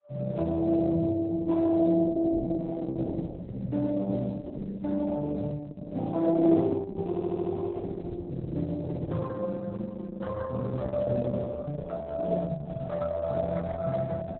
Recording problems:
codec artefacts; Speex, then Opus, log-spectral distance 3 dB, nothing above 4 kHz
stutter; at 7 s

